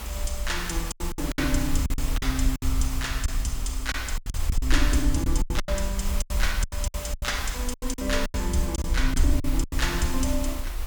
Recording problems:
hiss; slope -2 dB per octave, SNR 8 dB
rumble; below 58 Hz, SNR 1 dB
packet loss; 14% of the sound replaced, filled with silence

